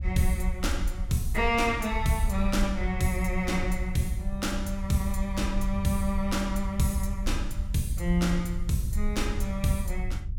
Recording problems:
rumble; below 66 Hz, SNR 4 dB

